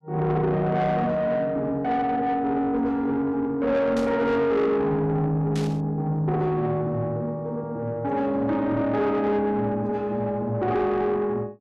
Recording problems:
distorted audio; soft clipping, signal-to-distortion ratio 11 dB
burst of static; at 4 s and at 5.5 s; peak -9 dB vs average level

